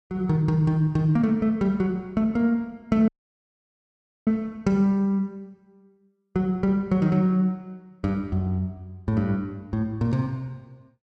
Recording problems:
dropout; at 3 s for 1 s

